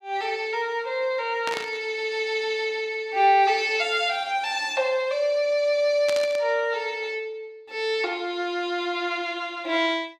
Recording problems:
burst of static; at 1.5 s and at 6 s; peak -3 dB vs average level

